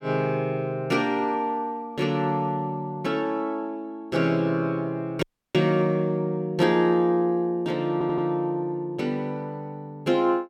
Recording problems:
dropout; at 5 s
audio stuttering; at 8 s

